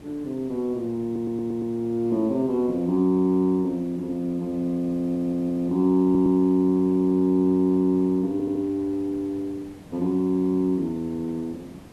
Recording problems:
background hiss; SNR 22 dB
stutter; 4 times, first at 1 s

